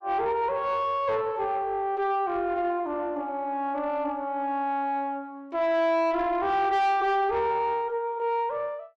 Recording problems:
distorted audio; soft clipping, signal-to-distortion ratio 10 dB

